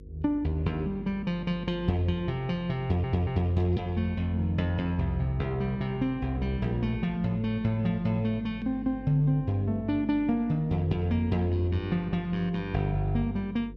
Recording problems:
electrical hum; 50 Hz, harmonics up to 500 Hz, SNR 17 dB
stutter; at 3 s

